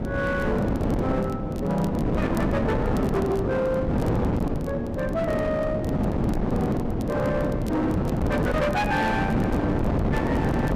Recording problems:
distorted audio; hard clipping, uneven, signal-to-distortion ratio 11 dB
wind on the microphone; below 430 Hz, SNR -1 dB
crackle; vinyl, SNR 24 dB

